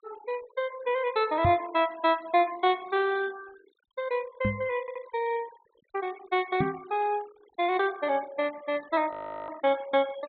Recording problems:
treble missing; nothing above 4 kHz
denoising artefacts; signal-to-artefact ratio 21 dB
knock on the microphone; at 1.5 s, at 4.5 s and at 6.5 s; peak +4 dB vs average level
stutter; at 5 s
frozen audio; at 9 s

